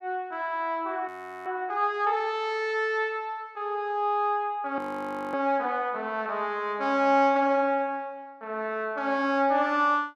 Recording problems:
audio freezing; at 1 s and at 5 s for 0.5 s

